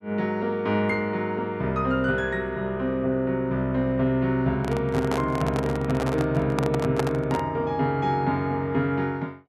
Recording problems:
microphone handling noise; from 4.5 to 7.5 s; peak +2 dB vs average level

